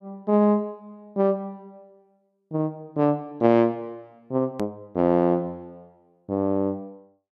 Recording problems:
edit click; at 4.5 s

